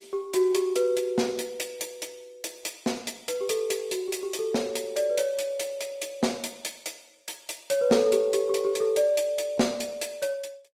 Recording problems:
codec artefacts; Opus, log-spectral distance 4 dB

